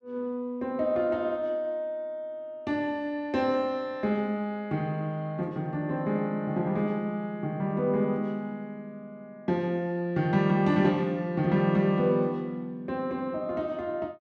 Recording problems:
none

